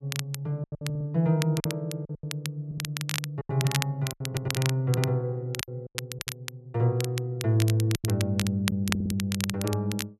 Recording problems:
crackling; vinyl, SNR 7 dB
packet loss; 8% of the sound replaced, filled with silence
stutter; 4 times, first at 1 s

